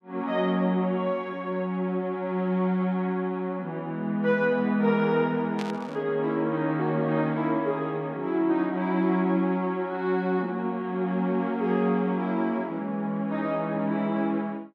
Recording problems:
burst of static; at 5.5 s; peak -7 dB vs average level

